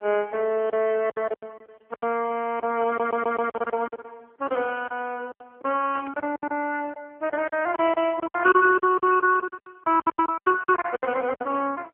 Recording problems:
telephone audio; 280 Hz to 3 kHz, AMR-NB
lost packets; 15% of the sound replaced, filled with silence
stutter; at 3 s
burst of static; at 6 s and at 7.5 s; peak -12 dB vs average level

